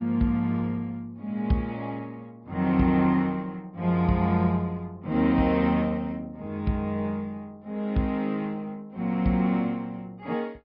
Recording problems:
low-pass filter; nothing above 5.2 kHz
lossy codec; Opus, log-spectral distance 2 dB

